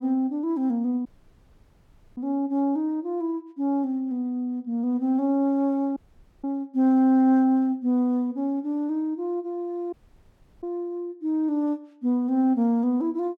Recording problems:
dropout; at 1 s for 1 s, at 6 s and at 10 s for 0.5 s

